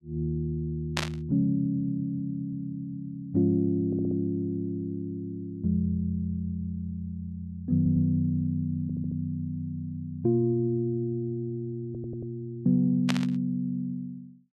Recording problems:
burst of static; at 1 s and at 13 s; peak +4 dB vs average level
audio stuttering; 4 times, first at 4 s

